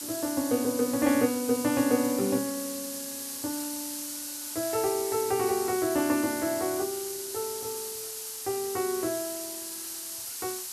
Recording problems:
hiss; SNR 5 dB

